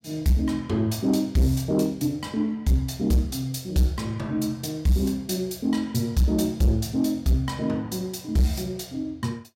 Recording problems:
distortion; soft clipping, signal-to-distortion ratio 11 dB

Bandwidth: 16 kHz